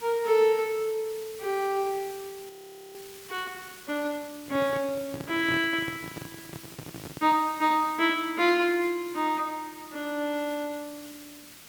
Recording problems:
background hiss; slope 0 dB per octave, SNR 18 dB
audio freezing; at 2.5 s
microphone handling noise; from 4.5 to 7.5 s; peak -5 dB vs average level

